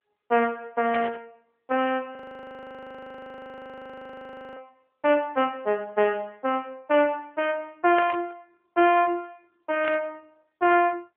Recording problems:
phone line; 240 Hz to 3.2 kHz, AMR-NB
static burst; at 1 s, at 8 s and at 10 s; peak -4 dB vs average level
frozen audio; at 2 s for 2.5 s

